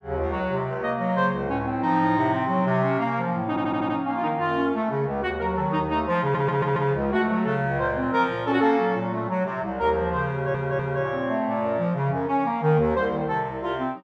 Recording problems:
audio stuttering; at 3.5 s, at 6 s and at 10 s

